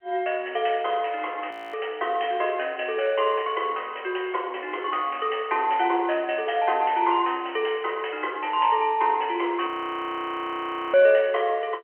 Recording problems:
phone line; 300 Hz to 3.2 kHz, G.711
frozen audio; at 1.5 s and at 9.5 s for 1.5 s

